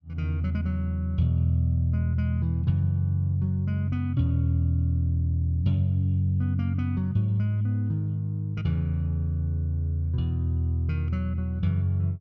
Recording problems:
none

